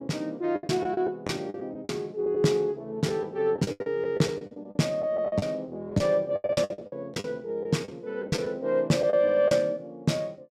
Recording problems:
lost packets; 13% of the sound replaced, filled with the last packet

